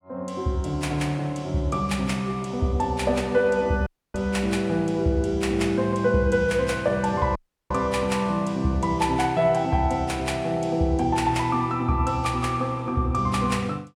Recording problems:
audio cutting out; at 4 s and at 7.5 s

